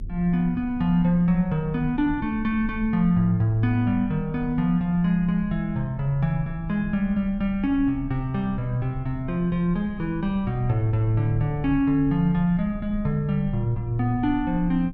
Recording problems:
rumble; below 82 Hz, strongest tone 30 Hz, SNR 15 dB

